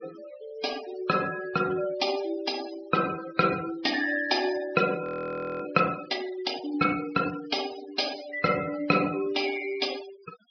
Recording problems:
treble cut off; nothing above 5.5 kHz
noise reduction artefacts; signal-to-artefact ratio 14 dB
audio freezing; at 5 s for 0.5 s

